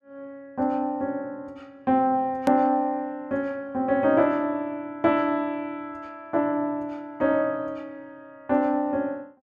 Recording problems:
click at an edit; at 2.5 s

